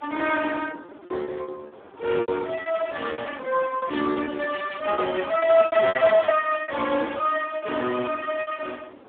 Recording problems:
phone line; 240 Hz to 3.5 kHz, Speex
wind on the microphone; below 940 Hz, SNR 23 dB
lost packets; 16% of the sound replaced, filled with repeated pitch periods

